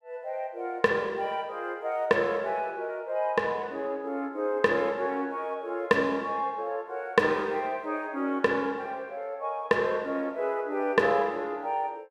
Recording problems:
none

